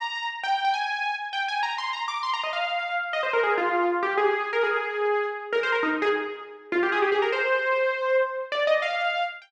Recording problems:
none

